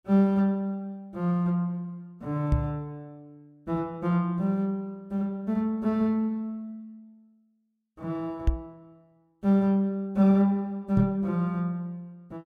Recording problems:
microphone bump; at 2.5 s, at 8.5 s and at 11 s; peak +6 dB vs average level

